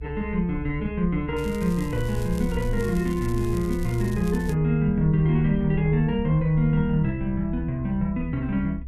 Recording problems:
rumble; below 66 Hz, SNR 10 dB
crackle; from 1.5 to 4.5 s; loose cable, SNR 21 dB

